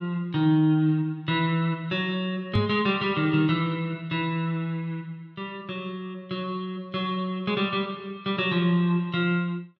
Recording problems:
microphone thump; at 2.5 s; peak +5 dB vs average level

